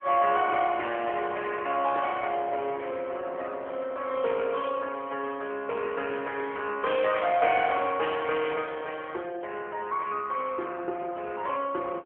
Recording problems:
telephone audio; 320 Hz to 3.4 kHz, AMR-NB

